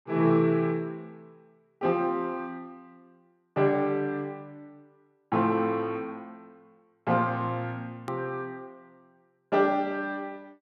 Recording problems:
hard cut with a click; at 8 s

